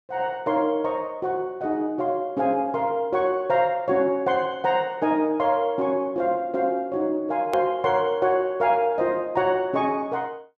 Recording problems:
hard cut with a click; at 7.5 s

